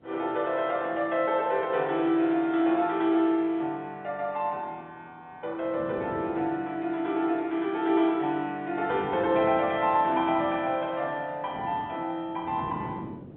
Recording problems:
phone line; 220 Hz to 4 kHz, G.711
wind noise; below 390 Hz, SNR 16 dB

